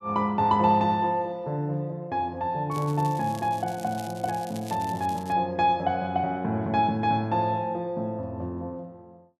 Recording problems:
crackle; from 2.5 to 5.5 s; loose cable, SNR 20 dB

